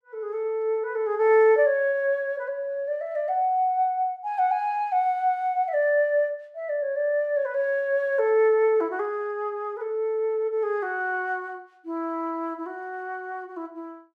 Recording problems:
none

